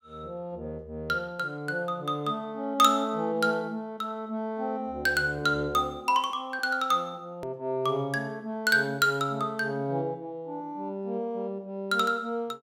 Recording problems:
hard cut with a click; at 7.5 s

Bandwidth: 16 kHz